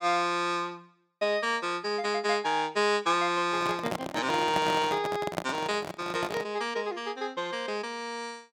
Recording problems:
microphone handling noise; from 3.5 to 6.5 s; peak +2 dB vs average level

